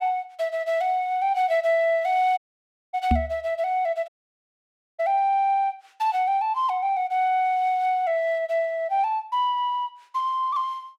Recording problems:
dropout; at 2.5 s for 0.5 s and at 4 s for 1 s
microphone thump; at 3 s; peak +5 dB vs average level

